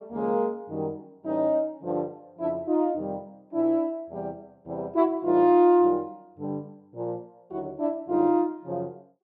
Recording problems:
none

